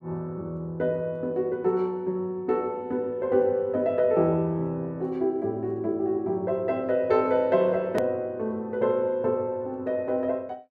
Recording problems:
edit click; at 8 s

